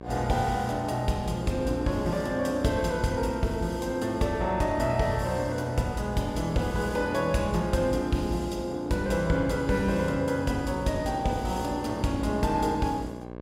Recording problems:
hum; 60 Hz, harmonics up to 1.7 kHz, SNR 12 dB

